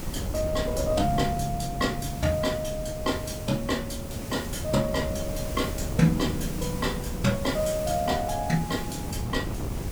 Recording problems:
hiss; slope -3 dB per octave, SNR 13 dB
wind on the microphone; below 250 Hz, SNR 6 dB

